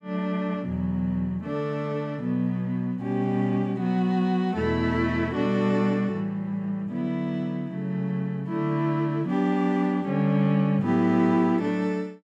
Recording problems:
none

